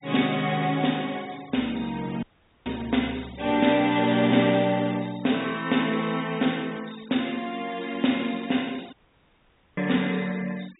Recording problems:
low-pass filter; nothing above 4 kHz
noise reduction artefacts; signal-to-artefact ratio 21 dB
audio cutting out; at 2 s and at 9 s for 1 s

